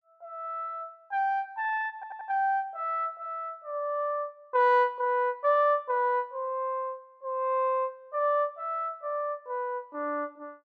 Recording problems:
stutter; at 2 s

